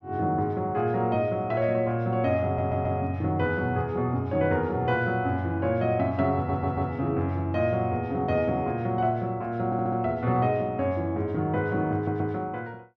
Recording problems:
stutter; 4 times, first at 2.5 s

